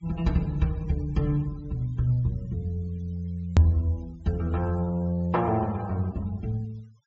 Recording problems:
treble missing; nothing above 7.6 kHz
denoising artefacts; signal-to-artefact ratio 27 dB
edit click; at 3.5 s

